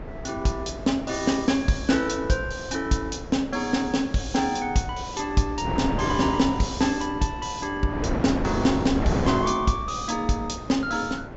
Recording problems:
treble cut off; nothing above 7.6 kHz
wind on the microphone; below 580 Hz, SNR 7 dB

